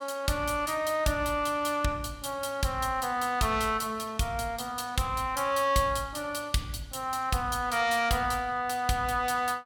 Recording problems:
none

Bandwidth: 17.5 kHz